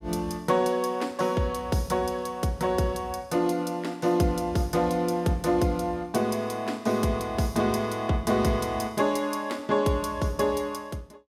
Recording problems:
none

